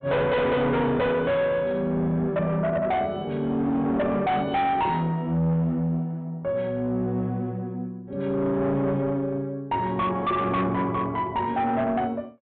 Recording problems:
treble cut off; nothing above 4 kHz
distortion; soft clipping, signal-to-distortion ratio 6 dB

